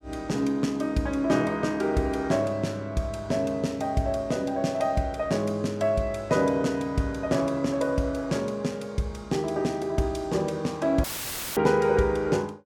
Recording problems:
dropout; at 11 s for 0.5 s; filled with static

